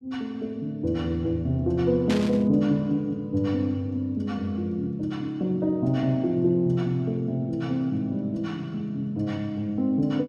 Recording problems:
burst of static; at 2 s; peak -2 dB vs average level

